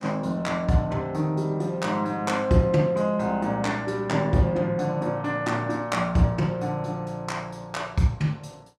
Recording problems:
none

